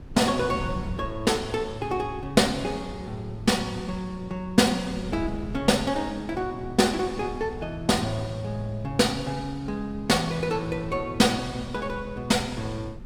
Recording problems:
wind on the microphone; below 150 Hz, SNR 14 dB

